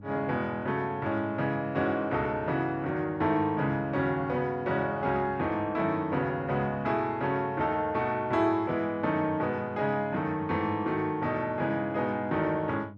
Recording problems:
hum; 50 Hz, harmonics up to 600 Hz, SNR 19 dB

